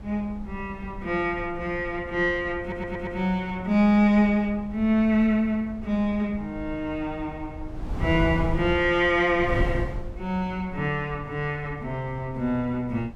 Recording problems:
wind noise; below 140 Hz, SNR 12 dB
audio stuttering; at 2.5 s

